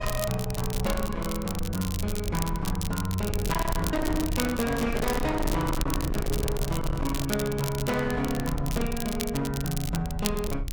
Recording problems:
distorted audio; hard clipping, uneven, signal-to-distortion ratio 7 dB
rumble; below 100 Hz, SNR 6 dB
crackle; vinyl, SNR 8 dB
microphone handling noise; from 3.5 to 7.5 s; peak -7 dB vs average level

